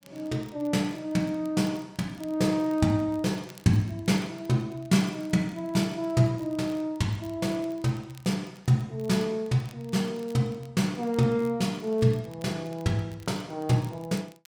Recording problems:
crackling; vinyl, SNR 28 dB

